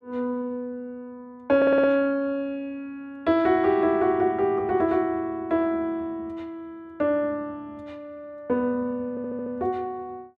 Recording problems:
stutter; at 1.5 s and at 9 s

